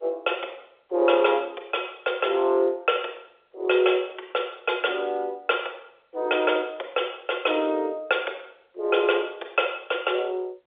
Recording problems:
telephone audio; 320 Hz to 3.6 kHz, G.711

